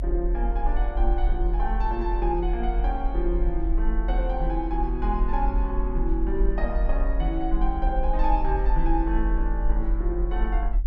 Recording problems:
rumble; below 44 Hz, strongest tone 42 Hz, SNR -2 dB

